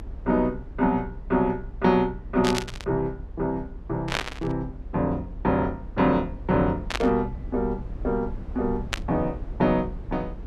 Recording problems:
rumble; below 78 Hz, SNR 12 dB
static burst; 4 times, first at 2.5 s; peak +4 dB vs average level

